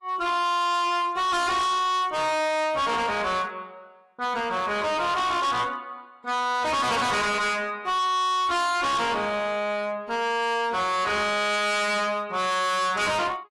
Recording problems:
lossy compression; AAC, log-spectral distance 2 dB, nothing above 11.3 kHz
distorted audio; hard clipping, uneven, signal-to-distortion ratio 5 dB

